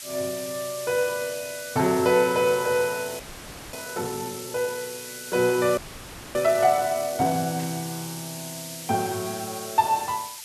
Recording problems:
hiss; SNR 11 dB
audio freezing; at 3 s for 0.5 s and at 6 s for 0.5 s
static burst; at 7.5 s; peak -13 dB vs average level

